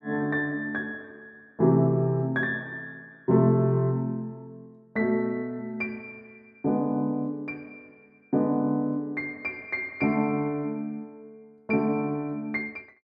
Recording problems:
none

